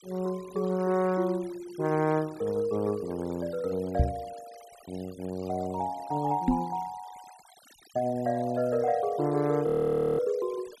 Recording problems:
denoising artefacts; signal-to-artefact ratio 22 dB
knock on the microphone; at 4 s and at 6.5 s; peak +8 dB vs average level
frozen audio; at 9.5 s for 0.5 s

